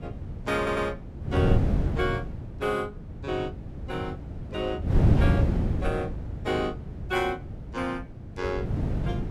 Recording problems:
wind noise; below 180 Hz, SNR -2 dB
stutter; at 0.5 s

